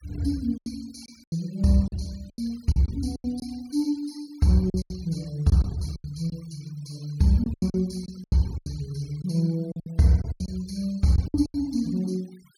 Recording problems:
denoising artefacts; signal-to-artefact ratio 25 dB
packet loss; 12% of the sound replaced, filled with silence

